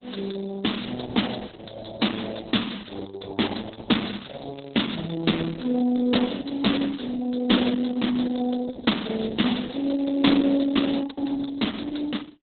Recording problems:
lossy codec; Opus, log-spectral distance 9 dB, nothing above 4 kHz
crackling; at 4.5 s and from 9 to 10 s; loose cable, SNR 27 dB

